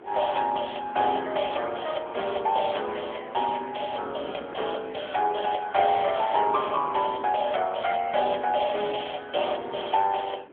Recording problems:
phone line; 280 Hz to 3.4 kHz, AMR-NB
wind on the microphone; below 700 Hz, SNR 19 dB

